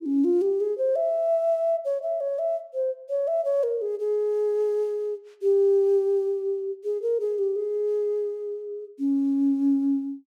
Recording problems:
none

